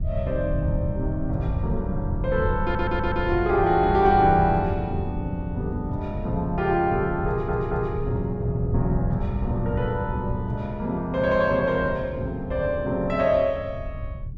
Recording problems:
wind noise; below 100 Hz, SNR 8 dB
audio stuttering; at 2.5 s and at 7.5 s

